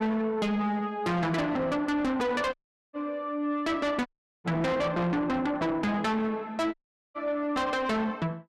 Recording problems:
distorted audio; soft clipping, signal-to-distortion ratio 7 dB
dropout; at 2.5 s, at 4 s and at 6.5 s

